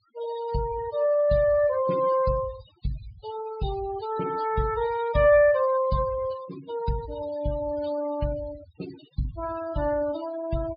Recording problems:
low-pass filter; nothing above 5 kHz
noise reduction artefacts; signal-to-artefact ratio 15 dB

